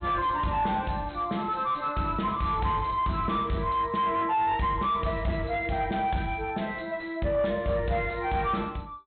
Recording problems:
treble cut off; nothing above 4 kHz
distorted audio; soft clipping, signal-to-distortion ratio 9 dB

